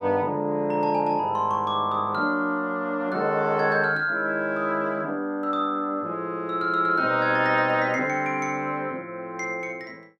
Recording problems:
none

